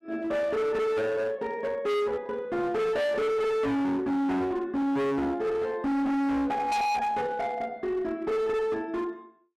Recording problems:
distorted audio; hard clipping, uneven, signal-to-distortion ratio 6 dB

